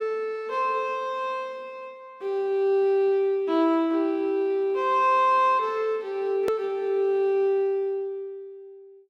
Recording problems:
edit click; at 6.5 s

